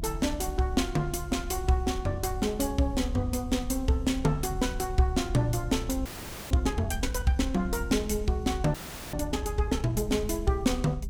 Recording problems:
low-frequency rumble; below 66 Hz, SNR 9 dB
frozen audio; at 6 s and at 8.5 s

